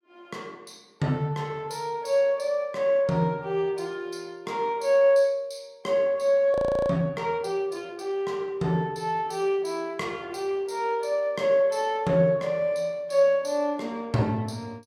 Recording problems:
audio freezing; at 6.5 s

